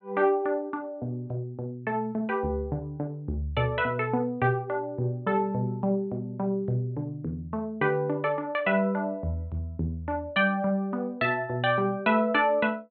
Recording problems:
low-pass filter; nothing above 4.3 kHz

